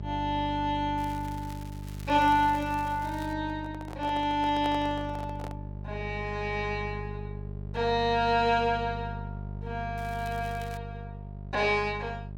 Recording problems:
hum; 50 Hz, harmonics up to 600 Hz, SNR 10 dB
crackle; from 1 to 3.5 s and at 10 s; loose cable, SNR 21 dB
handling noise; from 3.5 to 5.5 s; peak -6 dB vs average level

